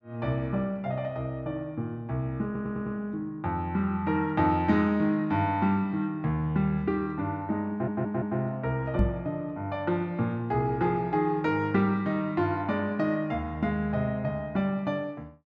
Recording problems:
stutter; at 2.5 s and at 7.5 s
knock on the microphone; at 9 s; peak +7 dB vs average level

